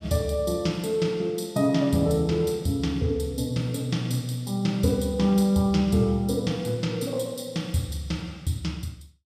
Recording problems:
none

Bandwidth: 15.5 kHz